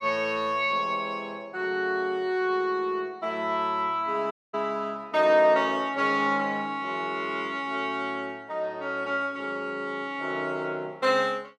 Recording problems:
dropout; at 4.5 s

